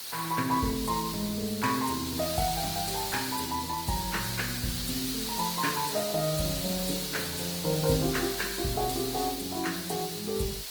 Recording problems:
codec artefacts; Opus, log-spectral distance 8 dB, nothing above 19 kHz
hiss; SNR 3 dB

